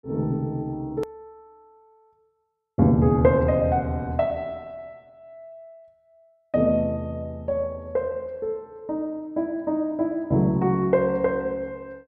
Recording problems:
hard cut with a click; at 1 s

